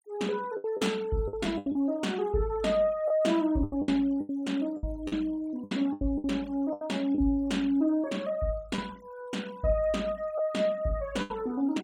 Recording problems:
noise reduction artefacts; signal-to-artefact ratio 24 dB
lost packets; 9% of the sound replaced, filled with the last packet

